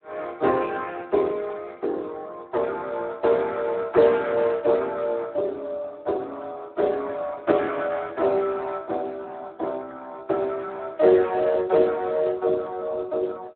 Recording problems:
telephone audio; 300 Hz to 3.5 kHz, Speex

